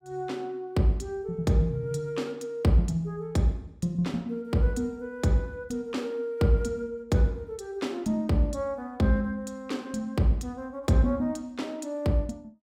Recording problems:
none

